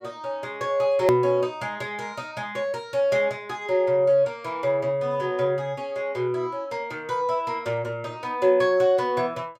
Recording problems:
edit click; at 1 s

